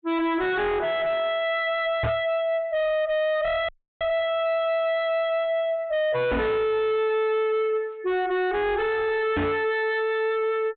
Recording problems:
treble cut off; nothing above 4 kHz
distortion; soft clipping, signal-to-distortion ratio 5 dB
knock on the microphone; at 2 s, at 6.5 s and at 9.5 s; peak +6 dB vs average level
dropout; at 3.5 s

